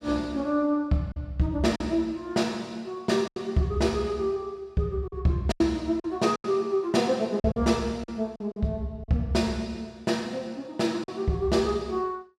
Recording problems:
lost packets; 6% of the sound replaced, filled with silence

